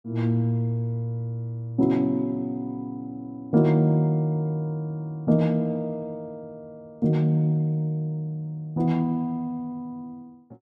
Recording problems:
none

